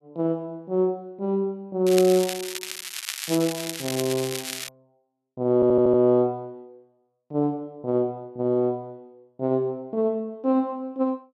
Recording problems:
crackle; from 2 to 4.5 s; loose cable, SNR 7 dB
audio stuttering; at 5.5 s

